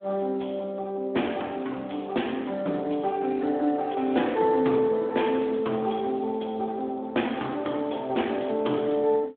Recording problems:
phone line; 220 Hz to 3.4 kHz, Speex

